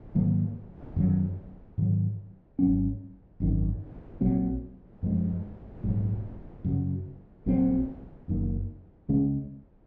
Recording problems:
wind noise; below 300 Hz, SNR 19 dB

